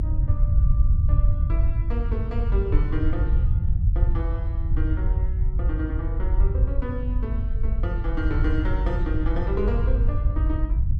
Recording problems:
rumble; below 80 Hz, SNR -9 dB

